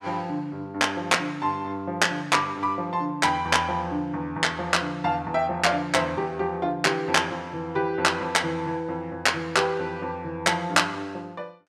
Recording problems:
none

